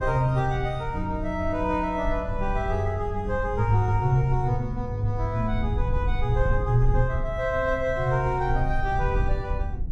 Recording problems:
low-frequency rumble; below 68 Hz, SNR 6 dB

